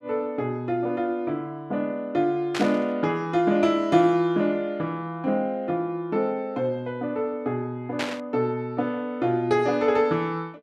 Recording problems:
burst of static; at 2.5 s and at 8 s; peak 0 dB vs average level

